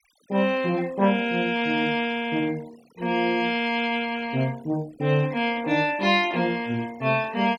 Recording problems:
noise reduction artefacts; signal-to-artefact ratio 22 dB

